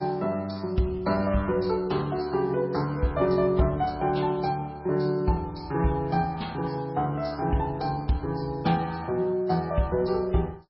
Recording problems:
lossy codec; MP3, log-spectral distance 3 dB, nothing above 5.3 kHz

